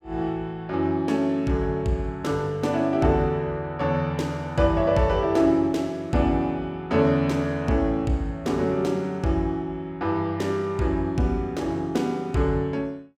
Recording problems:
none

